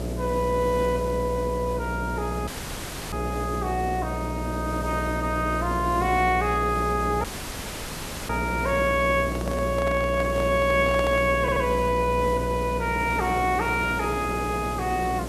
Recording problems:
electrical hum; 60 Hz, harmonics up to 660 Hz, SNR 6 dB
background hiss; SNR 10 dB
dropout; at 2.5 s for 0.5 s and at 7 s for 1 s
microphone handling noise; from 9.5 to 11 s; peak -3 dB vs average level
audio stuttering; at 11 s

